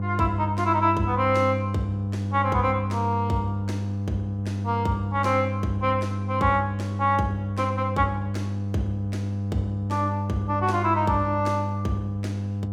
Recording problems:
hum; 50 Hz, harmonics up to 700 Hz, SNR 3 dB

